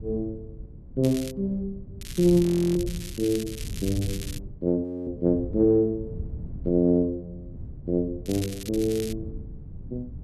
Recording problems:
wind on the microphone; below 130 Hz, SNR 14 dB
crackling; at 1 s, from 2 to 4.5 s and at 8.5 s; loose cable, SNR 14 dB
audio freezing; at 2.5 s and at 5 s

